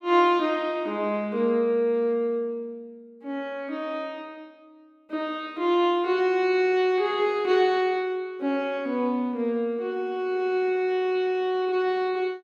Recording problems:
none

